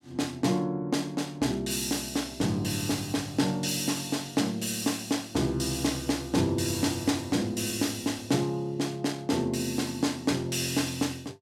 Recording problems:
none

